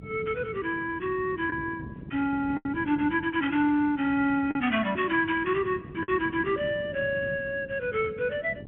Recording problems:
phone line; 220 Hz to 3.6 kHz, G.711
wind on the microphone; below 300 Hz, SNR 15 dB
packet loss; 2% of the sound replaced, filled with the last packet

